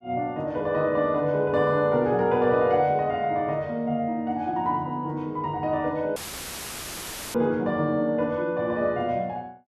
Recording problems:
audio cutting out; at 6 s for 1 s; filled with static

